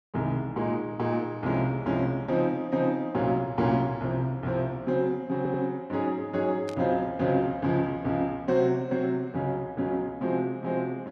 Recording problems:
audio stuttering; at 5.5 s
burst of static; at 6.5 s; peak -11 dB vs average level

